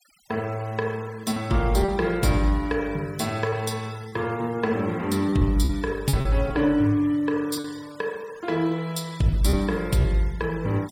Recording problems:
noise reduction artefacts; signal-to-artefact ratio 23 dB
packet loss; 4% of the sound replaced, filled with repeated pitch periods

